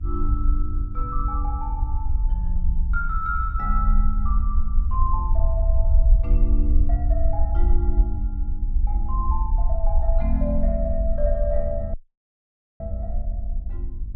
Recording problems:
electrical hum; 50 Hz, harmonics up to 650 Hz, SNR 18 dB
rumble; below 54 Hz, SNR -6 dB
dropout; at 12 s for 1 s

